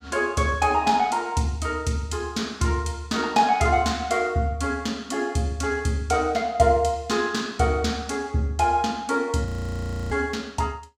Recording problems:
frozen audio; at 9.5 s for 0.5 s

